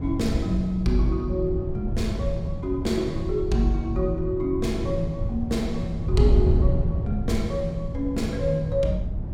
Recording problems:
wind on the microphone; below 120 Hz, SNR 2 dB

